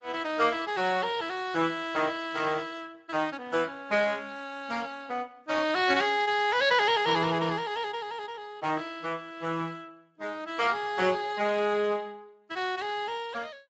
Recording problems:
codec artefacts; Vorbis, then Speex, log-spectral distance 5 dB, nothing above 7.6 kHz

